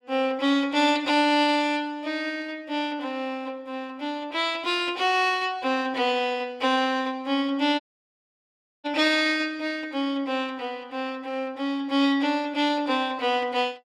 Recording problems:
audio cutting out; at 8 s for 1 s

